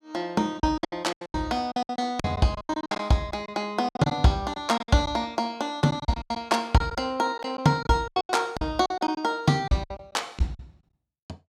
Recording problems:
lost packets; 16% of the sound replaced, filled with silence

